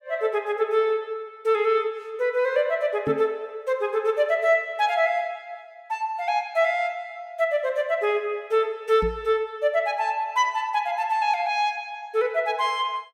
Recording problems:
knock on the microphone; at 3 s and at 9 s; peak -2 dB vs average level

